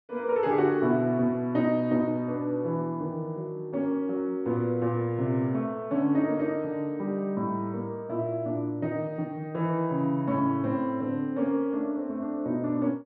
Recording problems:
none

